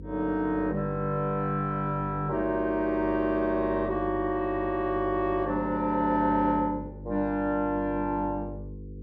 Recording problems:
hum; 50 Hz, harmonics up to 500 Hz, SNR 14 dB

